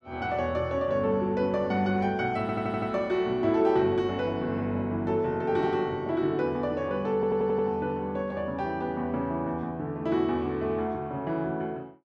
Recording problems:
audio stuttering; at 2.5 s and at 7 s

